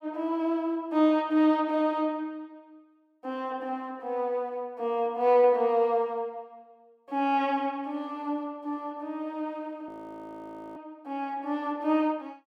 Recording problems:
frozen audio; at 10 s for 1 s

